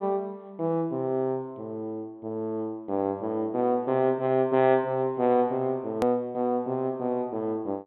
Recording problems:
treble missing; nothing above 4 kHz
hard cut with a click; at 6 s

